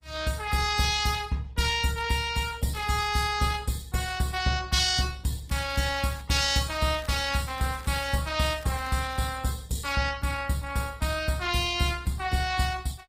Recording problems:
lossy compression; Opus, log-spectral distance 5 dB, nothing above 15.5 kHz
crackling; at 5.5 s, from 6.5 to 8 s and at 8.5 s; loose cable, SNR 23 dB

